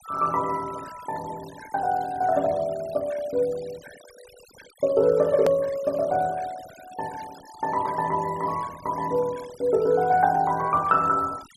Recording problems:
denoising artefacts; signal-to-artefact ratio 21 dB
edit click; at 5.5 s

